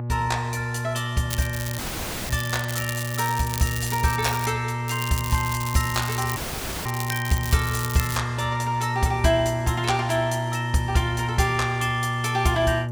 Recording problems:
electrical hum; 60 Hz, harmonics up to 840 Hz, SNR 5 dB
crackle; from 1.5 to 4.5 s and from 5 to 8 s; loose cable, SNR 8 dB
dropout; at 2 s for 0.5 s and at 6.5 s

